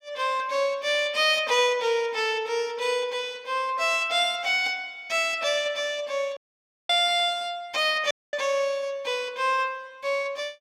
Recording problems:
audio cutting out; at 6.5 s for 0.5 s and at 8 s

